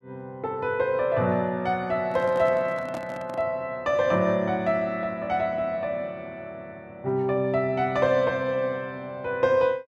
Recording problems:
handling noise; from 2 to 3.5 s; peak -9 dB vs average level

